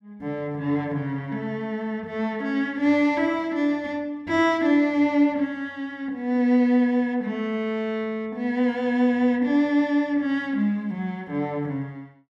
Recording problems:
none

